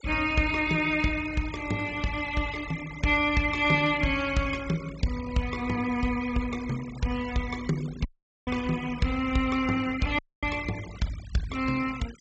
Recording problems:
low-pass filter; nothing above 8 kHz
noise reduction artefacts; signal-to-artefact ratio 17 dB
dropout; at 8 s and at 10 s

